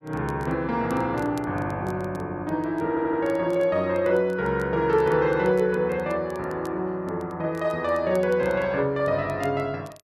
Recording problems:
crackle; vinyl, SNR 29 dB
audio stuttering; at 3 s

